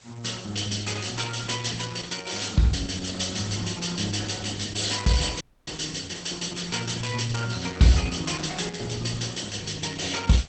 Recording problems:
codec artefacts; Opus, log-spectral distance 11 dB, nothing above 8.2 kHz
hiss; slope 0 dB per octave, SNR 22 dB
dropout; at 5.5 s

